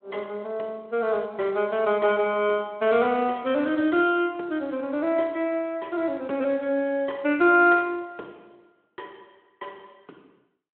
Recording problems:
telephone audio; 260 Hz to 3.2 kHz, Speex

